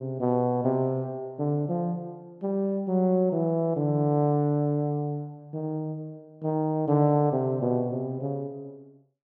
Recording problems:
none

